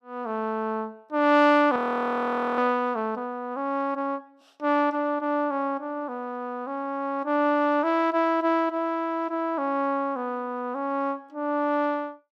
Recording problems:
frozen audio; at 2 s for 1 s

